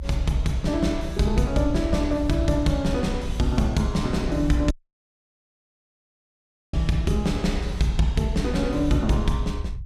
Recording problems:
rumble; below 72 Hz, SNR 7 dB
audio cutting out; at 4.5 s for 2 s

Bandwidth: 14.5 kHz